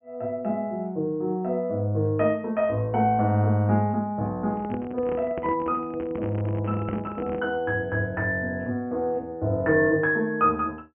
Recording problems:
treble cut off; nothing above 3 kHz
handling noise; from 4.5 to 7.5 s; peak -5 dB vs average level

